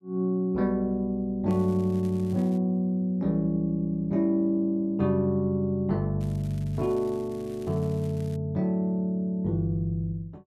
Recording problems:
crackle; from 1.5 to 2.5 s and from 6 to 8.5 s; loose cable, SNR 27 dB

